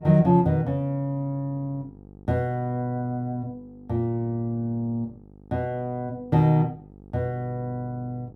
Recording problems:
hum; 50 Hz, harmonics up to 900 Hz, SNR 22 dB

